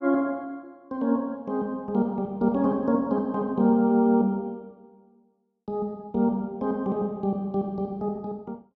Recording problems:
none

